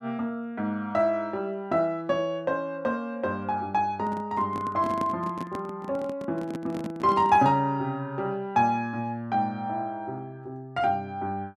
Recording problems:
handling noise; from 4 to 7.5 s; peak -1 dB vs average level

